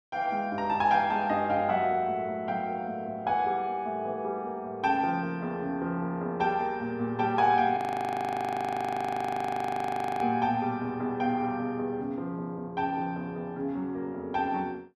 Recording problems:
frozen audio; at 8 s for 2.5 s

